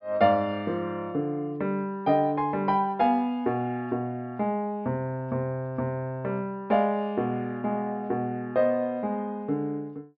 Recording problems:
treble cut off; nothing above 5.4 kHz

